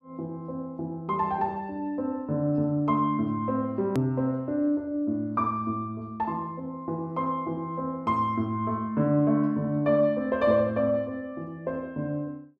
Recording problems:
edit click; at 4 s

